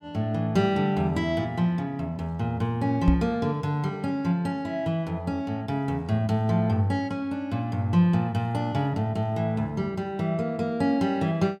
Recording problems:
microphone thump; at 3 s; peak +7 dB vs average level

